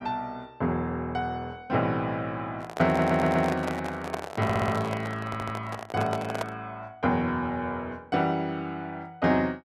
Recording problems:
microphone handling noise; from 2.5 to 6.5 s; peak +1 dB vs average level
stutter; at 3 s, at 4.5 s and at 5.5 s

